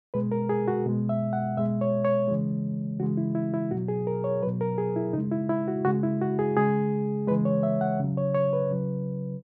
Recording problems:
none

